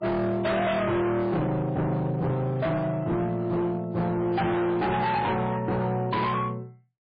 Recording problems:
lossy codec; MP3, log-spectral distance 2 dB, nothing above 4.8 kHz
distortion; hard clipping, signal-to-distortion ratio 7 dB

